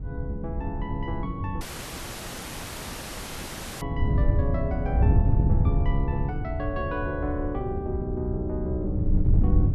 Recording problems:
wind noise; below 110 Hz, SNR -4 dB
audio cutting out; at 1.5 s for 2 s

